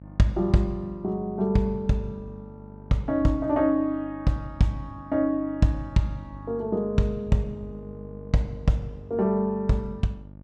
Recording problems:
electrical hum; 50 Hz, harmonics up to 900 Hz, SNR 17 dB

